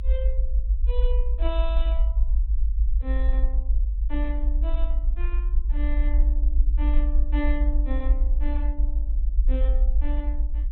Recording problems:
treble cut off; nothing above 4.1 kHz
rumble; below 54 Hz, SNR -11 dB

